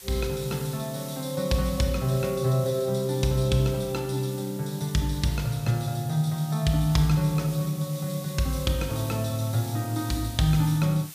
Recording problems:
background hiss; slope +2 dB per octave, SNR 16 dB

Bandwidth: 15 kHz